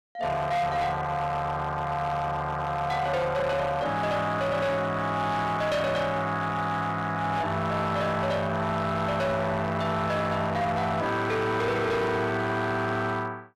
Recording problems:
distorted audio; hard clipping, signal-to-distortion ratio 10 dB

